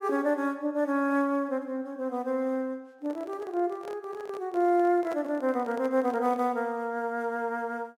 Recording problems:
microphone handling noise; from 3 to 6.5 s; peak -8 dB vs average level

